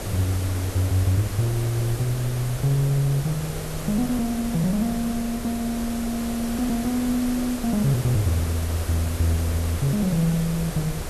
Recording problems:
hiss; slope -5 dB per octave, SNR 9 dB
wind noise; below 84 Hz, SNR 15 dB

